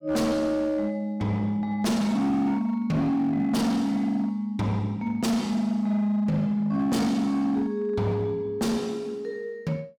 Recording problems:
distorted audio; hard clipping, signal-to-distortion ratio 10 dB

